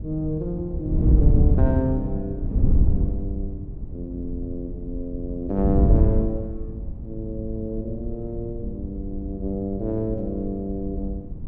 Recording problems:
wind noise; below 110 Hz, SNR -2 dB

